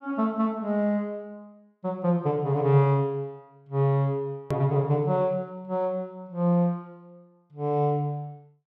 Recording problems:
hard cut with a click; at 4.5 s

